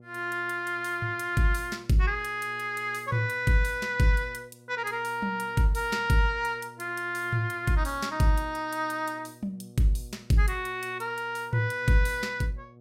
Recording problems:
hum; 60 Hz, harmonics up to 720 Hz, SNR 23 dB

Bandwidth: 16 kHz